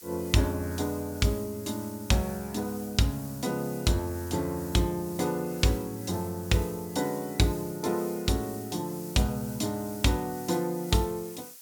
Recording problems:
background hiss; slope +3 dB per octave, SNR 14 dB

